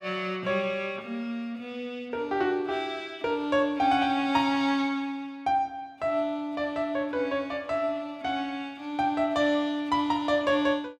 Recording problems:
none

